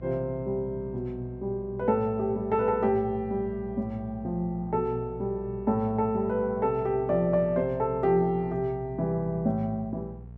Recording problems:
hum; 60 Hz, harmonics up to 660 Hz, SNR 16 dB

